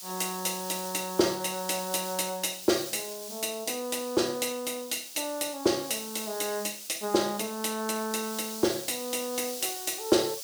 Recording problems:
hiss; SNR 9 dB

